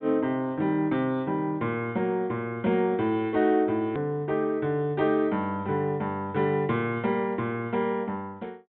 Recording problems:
treble missing; nothing above 4 kHz
hard cut with a click; at 4 s

